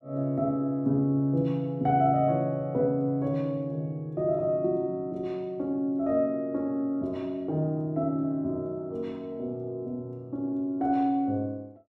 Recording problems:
none

